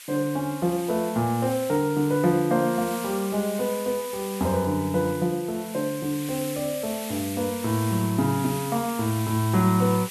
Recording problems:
hiss; SNR 12 dB

